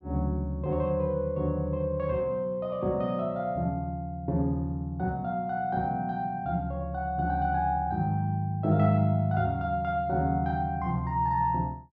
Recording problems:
none

